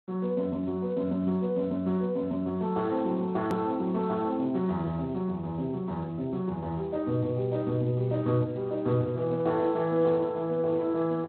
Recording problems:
codec artefacts; Speex, log-spectral distance 2 dB, nothing above 13.1 kHz
hard cut with a click; at 3.5 s

